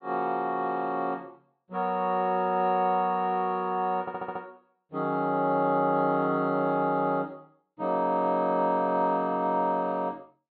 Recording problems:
treble cut off; nothing above 4.2 kHz
stutter; at 4 s

